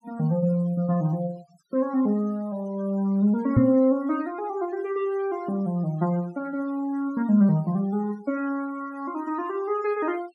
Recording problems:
noise reduction artefacts; signal-to-artefact ratio 24 dB
microphone thump; at 3.5 s; peak +8 dB vs average level

